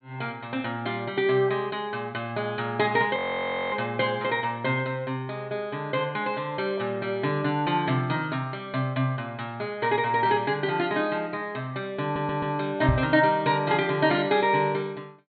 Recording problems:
treble missing; nothing above 4.2 kHz
frozen audio; at 3 s for 0.5 s
stutter; at 12 s
microphone thump; at 13 s; peak +5 dB vs average level

